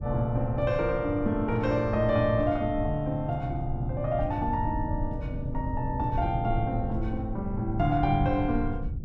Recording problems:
rumble; below 100 Hz, SNR 8 dB

